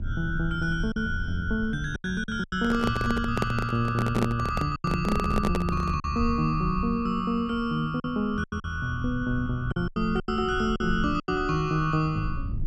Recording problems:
mains hum; 50 Hz, harmonics up to 950 Hz, SNR 21 dB
rumble; below 90 Hz, SNR 10 dB
lost packets; 7% of the sound replaced, filled with silence
handling noise; from 2.5 to 6 s; peak +4 dB vs average level

